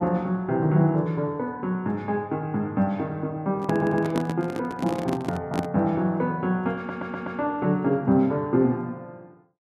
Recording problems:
handling noise; from 3.5 to 5.5 s; peak +2 dB vs average level
audio stuttering; at 3.5 s and at 7 s

